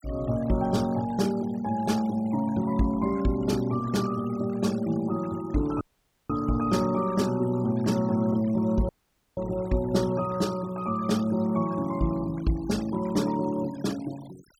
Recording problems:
noise reduction artefacts; signal-to-artefact ratio 20 dB
audio cutting out; at 6 s and at 9 s

